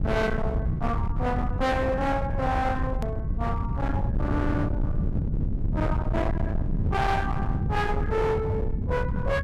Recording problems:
distortion; hard clipping, uneven, signal-to-distortion ratio 7 dB
low-frequency rumble; below 180 Hz, SNR 0 dB
hard cut with a click; at 3 s

